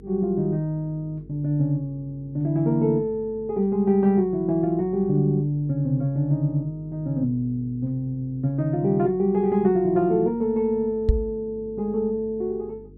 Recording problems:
electrical hum; 50 Hz, harmonics up to 450 Hz, SNR 23 dB
microphone thump; at 11 s; peak +8 dB vs average level

